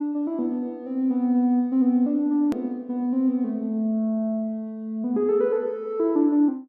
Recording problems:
hard cut with a click; at 2.5 s

